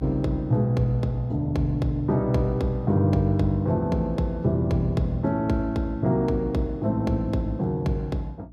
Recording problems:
electrical hum; 60 Hz, harmonics up to 300 Hz, SNR 23 dB

